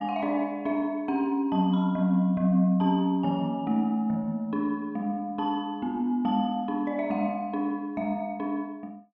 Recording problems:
none

